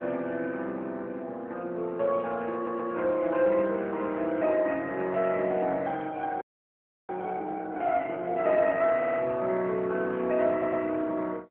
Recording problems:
telephone audio; 240 Hz to 3.2 kHz, AMR-NB
audio stuttering; at 2.5 s, at 9 s and at 11 s
frozen audio; at 6.5 s for 0.5 s

